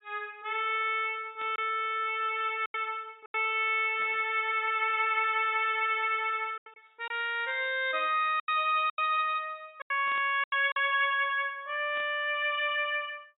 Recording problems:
low-pass filter; nothing above 4 kHz
packet loss; 5% of the sound replaced, filled with silence
static burst; 5 times, first at 1.5 s; peak -15 dB vs average level

